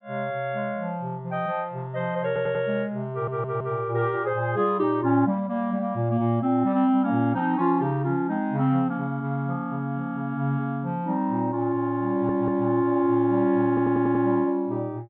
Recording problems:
treble cut off; nothing above 4 kHz
audio stuttering; 4 times, first at 2.5 s

